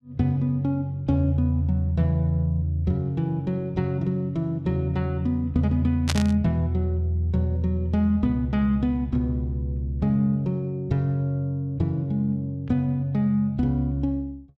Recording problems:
static burst; at 6 s; peak +2 dB vs average level

